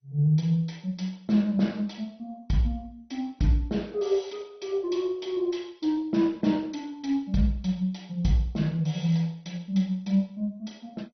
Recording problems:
lossy codec; MP2, log-spectral distance 2 dB, nothing above 6 kHz

